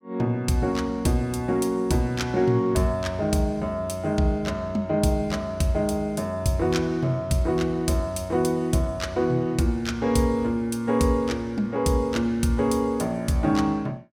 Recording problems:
none

